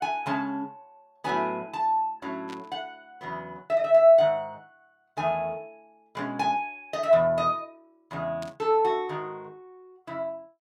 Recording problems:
burst of static; at 2.5 s and at 8.5 s; peak -13 dB vs average level

